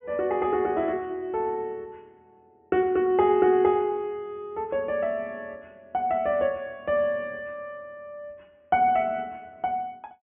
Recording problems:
low-pass filter; nothing above 3.2 kHz

